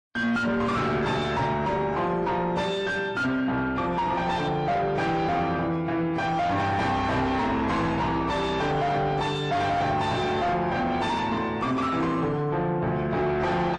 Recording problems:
lossy codec; AAC, then MP3, log-spectral distance 2 dB, nothing above 9 kHz
distorted audio; soft clipping, signal-to-distortion ratio 8 dB

